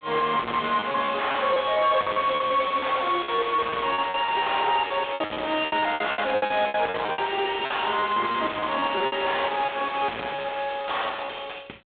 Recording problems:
telephone audio; 320 Hz to 3.6 kHz, G.726
distortion; soft clipping, signal-to-distortion ratio 4 dB
lost packets; 13% of the sound replaced, filled with repeated pitch periods

